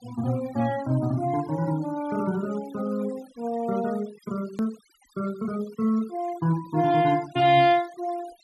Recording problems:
noise reduction artefacts; signal-to-artefact ratio 21 dB
hard cut with a click; at 4.5 s

